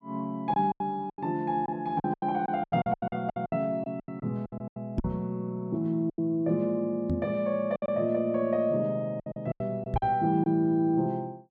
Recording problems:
lost packets; 13% of the sound replaced, filled with silence
knock on the microphone; at 5 s, at 7 s and at 10 s; peak +3 dB vs average level

